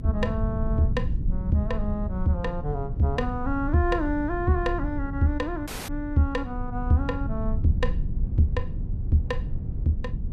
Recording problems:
low-frequency rumble; below 94 Hz, SNR 6 dB
wind on the microphone; below 100 Hz, SNR 8 dB
dropout; at 5.5 s

